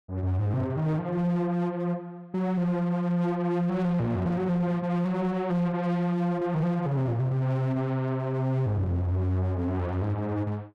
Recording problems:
distorted audio; hard clipping, signal-to-distortion ratio 11 dB

